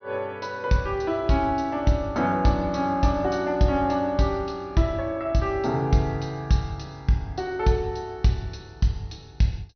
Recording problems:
low-pass filter; nothing above 6 kHz

